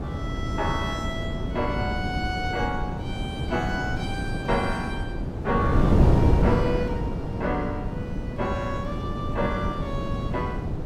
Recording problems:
wind on the microphone; below 280 Hz, SNR -2 dB

